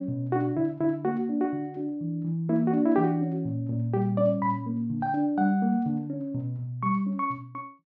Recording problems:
none

